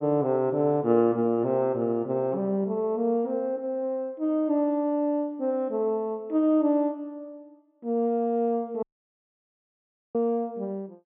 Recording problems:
treble cut off; nothing above 3.5 kHz
dropout; at 9 s for 1.5 s

